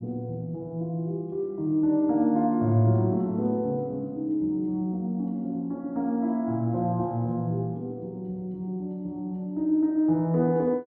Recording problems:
none

